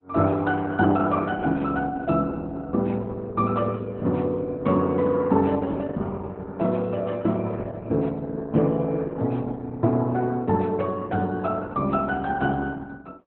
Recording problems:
lossy compression; Opus, log-spectral distance 3 dB

